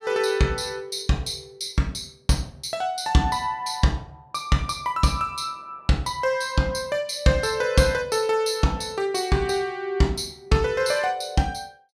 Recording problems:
none

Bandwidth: 15 kHz